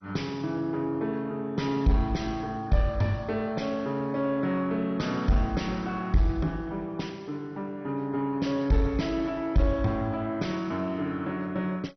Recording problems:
lossy codec; MP2, log-spectral distance 2 dB, nothing above 6 kHz
distorted audio; soft clipping, signal-to-distortion ratio 11 dB

